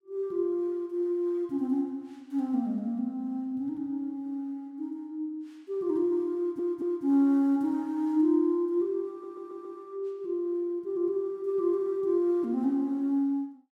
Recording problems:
audio stuttering; at 6.5 s and at 9 s

